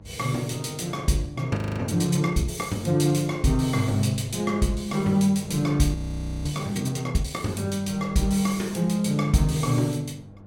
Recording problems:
hum; 50 Hz, harmonics up to 800 Hz, SNR 24 dB
wind on the microphone; below 430 Hz, SNR 25 dB
frozen audio; at 1.5 s and at 6 s for 0.5 s

